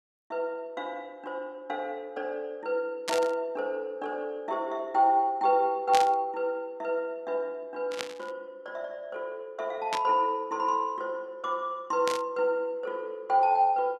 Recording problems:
static burst; 5 times, first at 3 s; peak +2 dB vs average level

